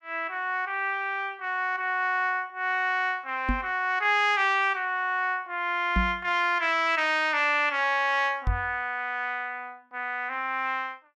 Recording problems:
knock on the microphone; at 3.5 s, at 6 s and at 8.5 s; peak +3 dB vs average level

